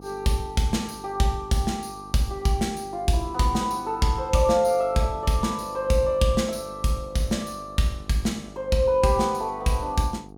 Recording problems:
hum; 50 Hz, harmonics up to 1.2 kHz, SNR 20 dB

